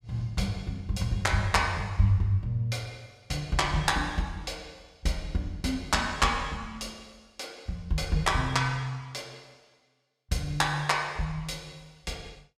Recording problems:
none

